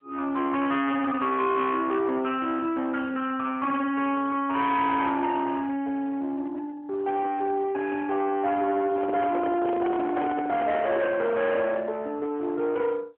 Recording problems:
phone line; 300 Hz to 3.7 kHz, AMR-NB
distorted audio; hard clipping, uneven, signal-to-distortion ratio 7 dB
microphone handling noise; from 9 to 11 s; peak -2 dB vs average level

